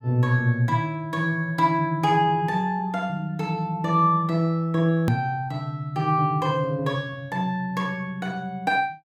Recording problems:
hard cut with a click; at 5 s

